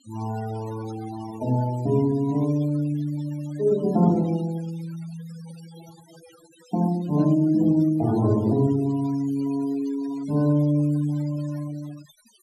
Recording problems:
noise reduction artefacts; signal-to-artefact ratio 21 dB

